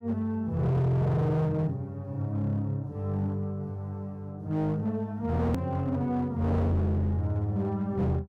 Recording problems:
distorted audio; hard clipping, signal-to-distortion ratio 7 dB
click at an edit; at 5.5 s

